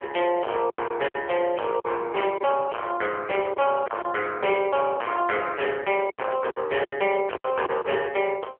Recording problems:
telephone audio; 320 Hz to 3.2 kHz, AMR-NB
distortion; hard clipping, uneven, signal-to-distortion ratio 3 dB
packet loss; 7% of the sound replaced, filled with silence

